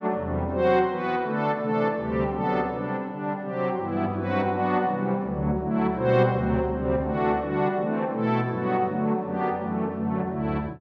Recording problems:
none

